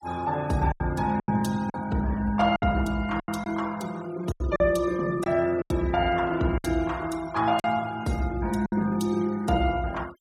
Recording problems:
denoising artefacts; signal-to-artefact ratio 20 dB
lost packets; 7% of the sound replaced, filled with silence

